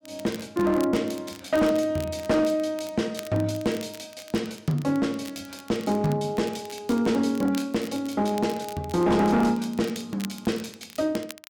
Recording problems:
distortion; hard clipping, signal-to-distortion ratio 12 dB
crackle; vinyl, SNR 19 dB

